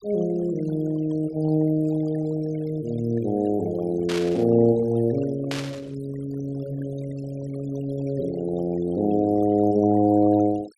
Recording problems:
denoising artefacts; signal-to-artefact ratio 20 dB
static burst; at 4 s and at 5.5 s; peak -3 dB vs average level

